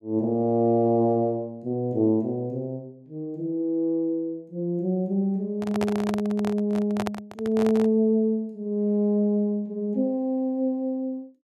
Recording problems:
handling noise; from 5.5 to 8 s; peak -1 dB vs average level

